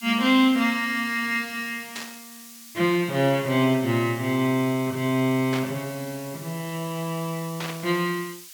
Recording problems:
background hiss; slope +6 dB per octave, SNR 17 dB
burst of static; at 2 s, at 5.5 s and at 7.5 s; peak -5 dB vs average level

